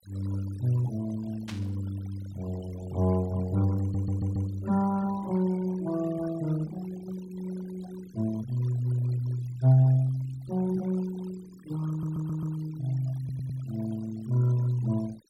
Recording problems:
denoising artefacts; signal-to-artefact ratio 19 dB
static burst; at 1.5 s; peak -7 dB vs average level
stutter; at 4 s, at 12 s and at 13 s

